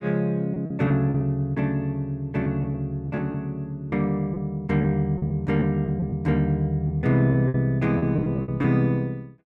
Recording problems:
lost packets; 8% of the sound replaced, filled with repeated pitch periods

